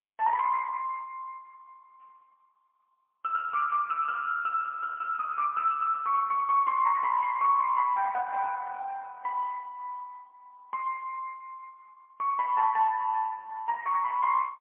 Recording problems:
telephone audio; 520 Hz to 2.8 kHz, AMR-NB, then MP3

